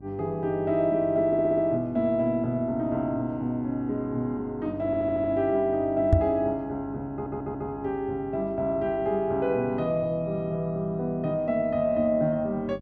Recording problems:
hum; 50 Hz, harmonics up to 700 Hz, SNR 20 dB
audio stuttering; at 1.5 s, at 5 s and at 7 s
microphone thump; at 6 s; peak +9 dB vs average level

